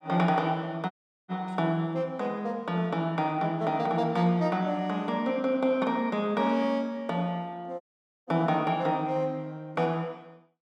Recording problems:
dropout; at 1 s and at 8 s

